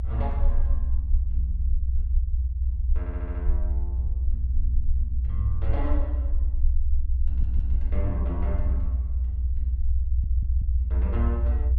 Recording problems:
low-frequency rumble; below 62 Hz, SNR -10 dB
audio stuttering; at 3 s, at 7.5 s and at 10 s

